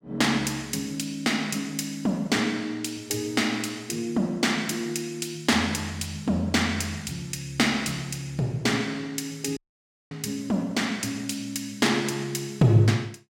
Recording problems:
dropout; at 9.5 s for 0.5 s

